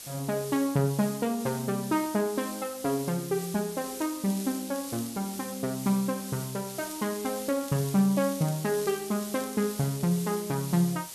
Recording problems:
background hiss; SNR 11 dB
crackling; from 4 to 5 s and from 6.5 to 10 s; loose cable, SNR 19 dB

